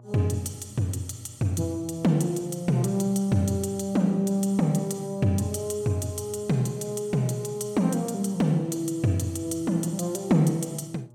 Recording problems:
hum; 60 Hz, harmonics up to 840 Hz, SNR 24 dB

